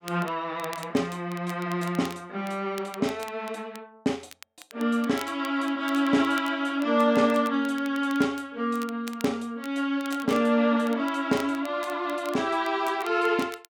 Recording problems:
crackling; vinyl, SNR 20 dB

